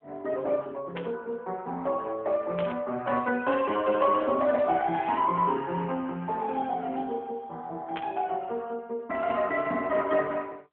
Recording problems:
phone line; 220 Hz to 3.2 kHz, AMR-NB
burst of static; at 1 s, at 2.5 s and at 8 s; peak -4 dB vs average level

